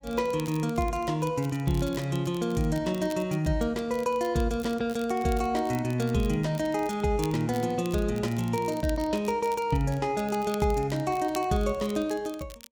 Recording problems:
crackle; vinyl, SNR 20 dB

